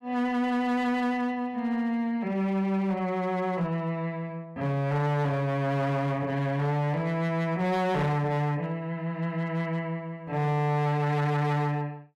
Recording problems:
distorted audio; hard clipping, signal-to-distortion ratio 11 dB

